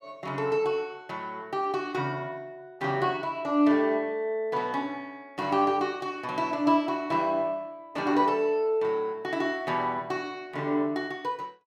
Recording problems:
none

